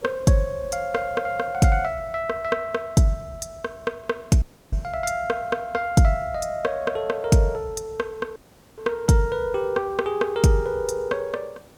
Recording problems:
hiss; slope -5 dB per octave, SNR 27 dB
audio cutting out; at 4.5 s and at 8.5 s

